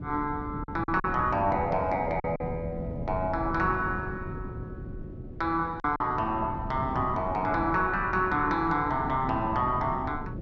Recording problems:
wind noise; below 240 Hz, SNR 10 dB
packet loss; 3% of the sound replaced, filled with silence

